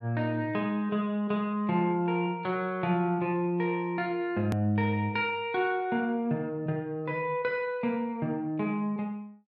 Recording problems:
edit click; at 4.5 s

